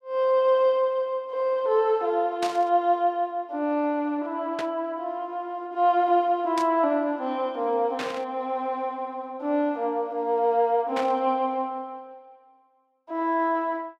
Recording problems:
static burst; 5 times, first at 2.5 s; peak -4 dB vs average level

